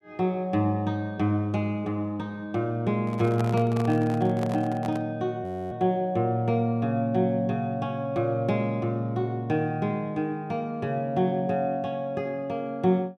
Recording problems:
microphone handling noise; from 3 to 5 s; peak -4 dB vs average level
frozen audio; at 5.5 s

